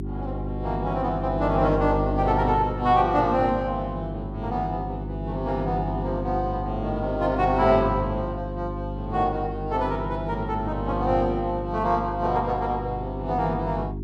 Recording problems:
electrical hum; 50 Hz, harmonics up to 400 Hz, SNR 6 dB

